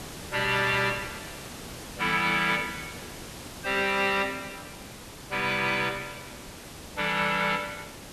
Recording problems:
hiss; slope -3 dB per octave, SNR 14 dB

